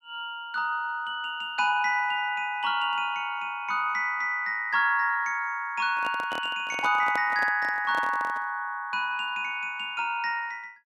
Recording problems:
handling noise; from 6 to 8.5 s; peak -5 dB vs average level

